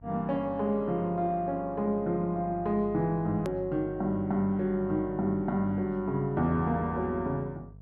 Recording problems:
hum; 50 Hz, harmonics up to 650 Hz, SNR 18 dB
edit click; at 3.5 s

